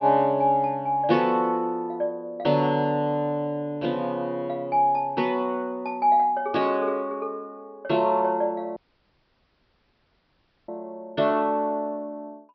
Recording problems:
low-pass filter; nothing above 5.5 kHz
audio cutting out; at 9 s for 2 s

